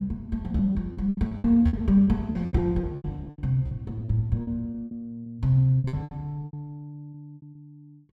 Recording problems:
packet loss; 19% of the sound replaced, filled with repeated pitch periods

